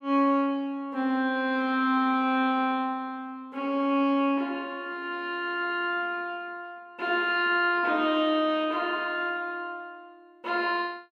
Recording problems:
none

